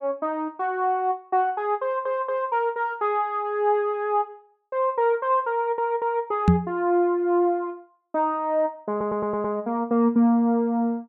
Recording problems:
audio stuttering; at 2 s, at 5.5 s and at 9 s
microphone bump; at 6.5 s; peak +10 dB vs average level

